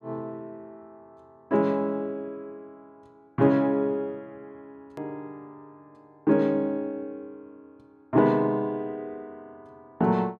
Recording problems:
hard cut with a click; at 5 s

